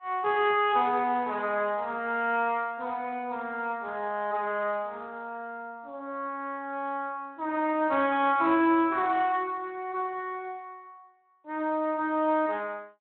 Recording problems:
phone line; 240 Hz to 3.3 kHz, Speex

